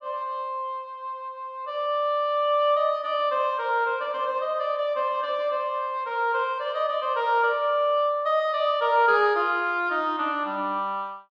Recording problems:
none

